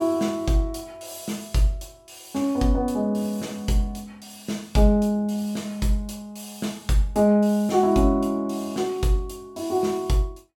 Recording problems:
none

